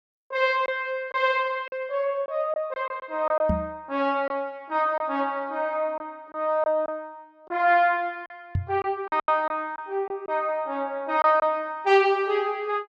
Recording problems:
lost packets; 5% of the sound replaced, filled with silence
knock on the microphone; at 3.5 s and at 8.5 s; peak +3 dB vs average level

